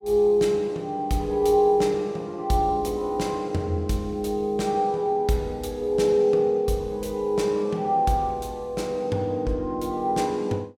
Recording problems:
none

